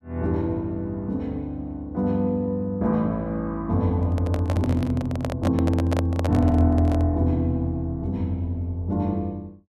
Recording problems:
handling noise; from 4 to 7 s; peak -1 dB vs average level

